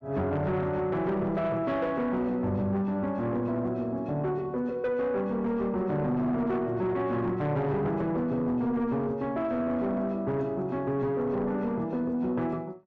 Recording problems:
distorted audio; soft clipping, signal-to-distortion ratio 11 dB

